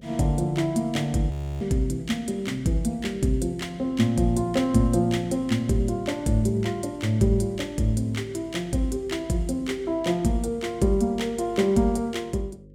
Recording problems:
hum; 50 Hz, harmonics up to 550 Hz, SNR 23 dB
audio freezing; at 1.5 s

